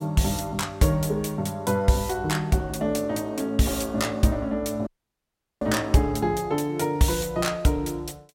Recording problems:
audio cutting out; at 5 s for 0.5 s

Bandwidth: 16.5 kHz